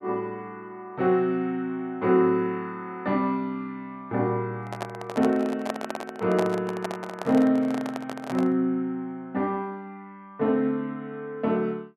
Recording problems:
microphone handling noise; from 4.5 to 8.5 s; peak +1 dB vs average level

